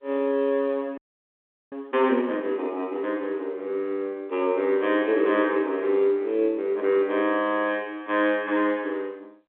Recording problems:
telephone audio; 220 Hz to 3.6 kHz, G.711
audio freezing; at 1 s for 0.5 s

